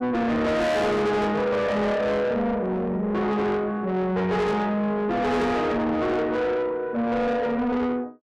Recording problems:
distortion; soft clipping, signal-to-distortion ratio 6 dB

